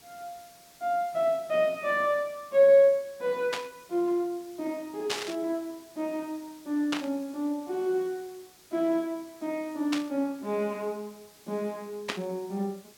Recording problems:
hiss; SNR 24 dB
burst of static; 5 times, first at 3.5 s; peak +2 dB vs average level

